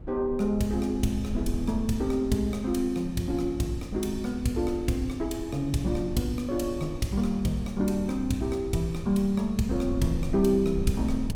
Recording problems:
wind on the microphone; below 100 Hz, SNR 11 dB

